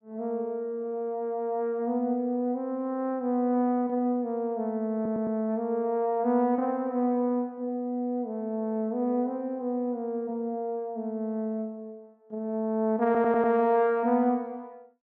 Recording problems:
stutter; at 5 s and at 13 s

